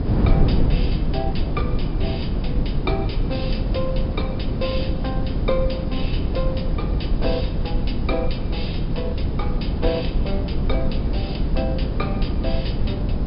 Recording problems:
low-pass filter; nothing above 5.5 kHz
background hiss; slope 0 dB per octave, SNR 21 dB
rumble; below 70 Hz, SNR 5 dB
wind noise; below 180 Hz, SNR -5 dB

